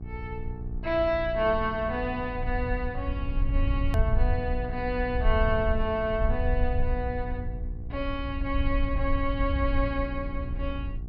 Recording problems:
low-pass filter; nothing above 5.5 kHz
electrical hum; 60 Hz, harmonics up to 780 Hz, SNR 11 dB
low-frequency rumble; below 70 Hz, SNR 2 dB
click at an edit; at 4 s

